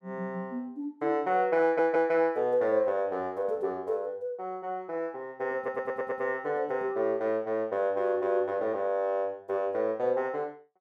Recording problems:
stutter; at 1.5 s and at 5.5 s

